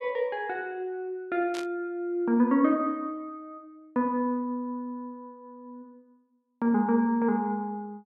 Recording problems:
static burst; at 1.5 s; peak -7 dB vs average level

